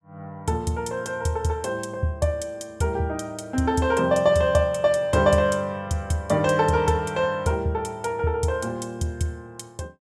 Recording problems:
none

